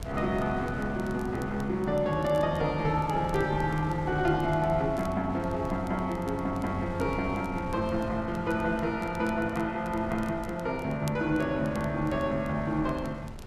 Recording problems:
wind on the microphone; below 270 Hz, SNR 12 dB
crackle; vinyl, SNR 26 dB

